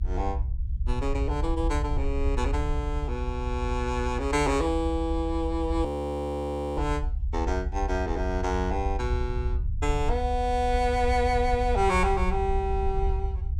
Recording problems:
low-frequency rumble; below 70 Hz, SNR 3 dB
frozen audio; at 6 s for 1 s

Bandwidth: 17 kHz